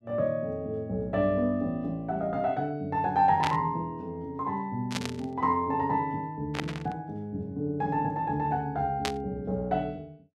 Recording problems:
static burst; 4 times, first at 3.5 s; peak +2 dB vs average level

